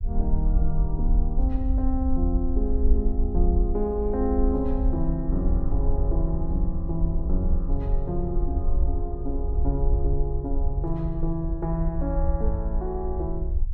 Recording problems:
rumble; below 58 Hz, SNR -2 dB

